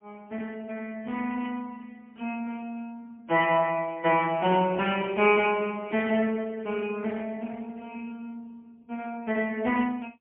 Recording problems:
phone line; 170 Hz to 3.3 kHz, AMR-NB, then MP3

